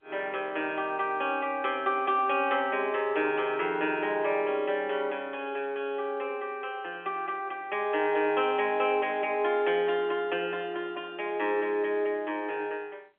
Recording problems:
phone line; 280 Hz to 3.4 kHz, G.711

